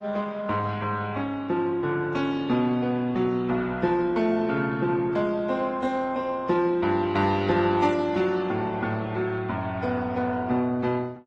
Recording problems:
codec artefacts; AAC, then Opus, log-spectral distance 2 dB

